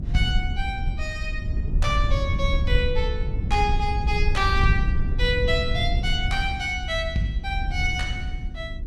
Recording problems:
hum; 50 Hz, harmonics up to 350 Hz, SNR 17 dB
low-frequency rumble; below 80 Hz, SNR 1 dB

